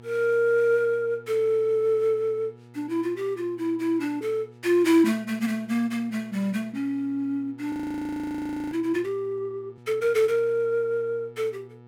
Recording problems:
hum; 60 Hz, harmonics up to 1.3 kHz, SNR 24 dB
frozen audio; at 7.5 s for 1 s

